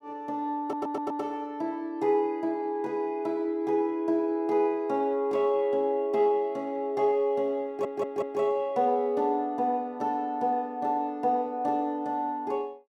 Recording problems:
audio stuttering; at 0.5 s and at 7.5 s

